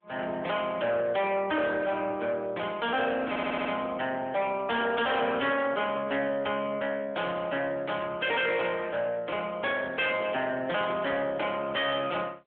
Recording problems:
telephone audio; 190 Hz to 3.4 kHz, AMR-NB
distortion; hard clipping, signal-to-distortion ratio 7 dB
audio stuttering; at 3.5 s

